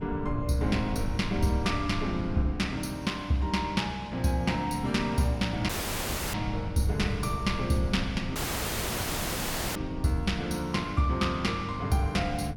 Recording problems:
wind on the microphone; below 120 Hz, SNR 10 dB
dropout; at 5.5 s for 0.5 s and at 8.5 s for 1.5 s

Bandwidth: 17.5 kHz